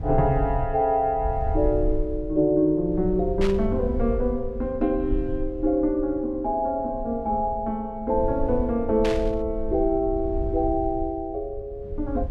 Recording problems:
low-frequency rumble; below 72 Hz, SNR 9 dB
static burst; at 3.5 s and at 9 s; peak -4 dB vs average level

